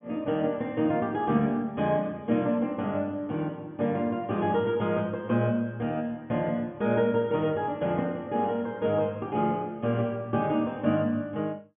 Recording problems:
treble cut off; nothing above 3.4 kHz

